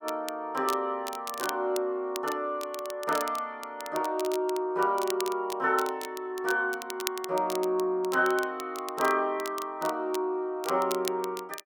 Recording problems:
crackle; vinyl, SNR 12 dB

